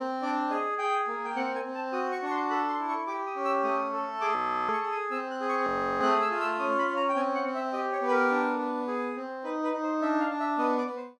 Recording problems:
audio freezing; at 4.5 s and at 5.5 s

